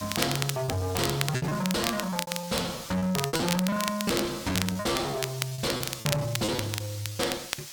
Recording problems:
distorted audio; soft clipping, signal-to-distortion ratio 6 dB
background hiss; slope +3 dB per octave, SNR 11 dB
crackle; vinyl, SNR 5 dB
packet loss; 17% of the sound replaced, filled with repeated pitch periods

